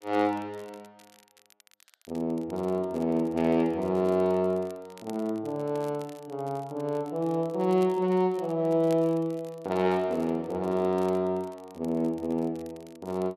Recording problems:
crackling; vinyl, SNR 27 dB

